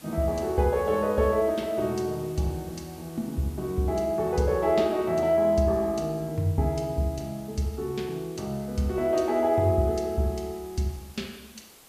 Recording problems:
background hiss; slope -2 dB per octave, SNR 23 dB

